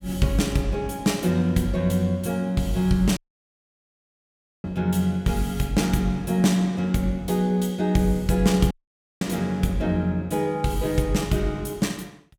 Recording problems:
audio cutting out; at 3 s for 1.5 s and at 8.5 s for 0.5 s

